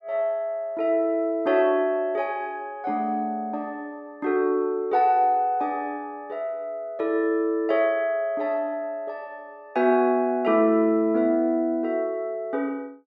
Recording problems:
none

